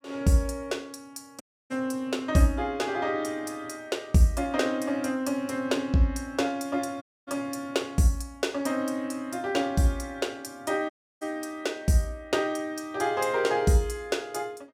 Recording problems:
dropout; at 1.5 s, at 7 s and at 11 s

